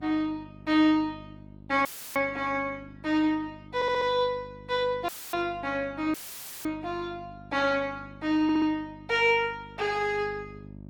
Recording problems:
codec artefacts; Opus, log-spectral distance 2 dB
hum; 50 Hz, harmonics up to 650 Hz, SNR 20 dB
dropout; at 2 s, at 5 s and at 6 s for 0.5 s; filled with static
audio stuttering; at 4 s and at 8.5 s

